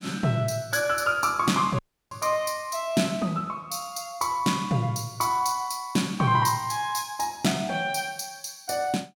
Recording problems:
audio cutting out; at 2 s

